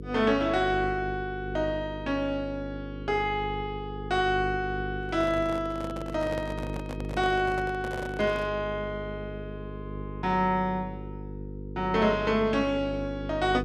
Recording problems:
hum; 50 Hz, harmonics up to 500 Hz, SNR 9 dB
handling noise; from 5 to 8.5 s; peak -5 dB vs average level

